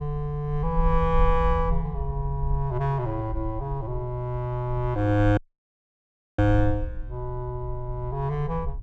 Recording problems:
wind on the microphone; below 58 Hz, SNR 6 dB
dropout; at 5.5 s for 1 s

